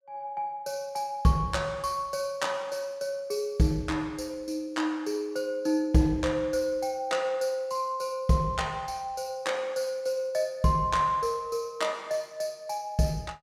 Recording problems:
none

